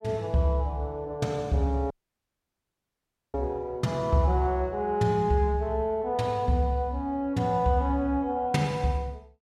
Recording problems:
audio cutting out; at 2 s for 1.5 s

